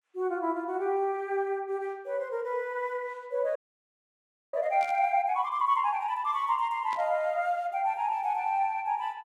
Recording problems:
frozen audio; at 3.5 s for 1 s
static burst; at 5 s and at 7 s; peak -11 dB vs average level

